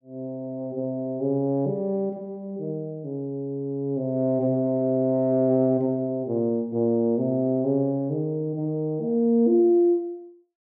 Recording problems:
none

